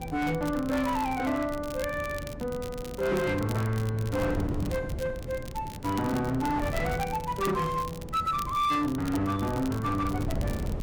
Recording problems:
distorted audio; hard clipping, signal-to-distortion ratio 12 dB
wind on the microphone; below 260 Hz, SNR 8 dB
crackle; vinyl, SNR 17 dB

